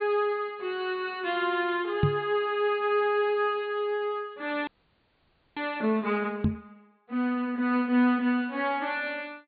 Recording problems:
low-pass filter; nothing above 4.7 kHz
microphone bump; at 2 s and at 6.5 s; peak +7 dB vs average level
audio freezing; at 4.5 s for 1 s

